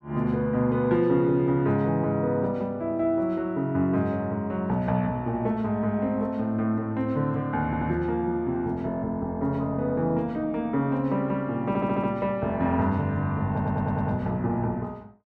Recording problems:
stutter; at 7.5 s, at 12 s and at 14 s

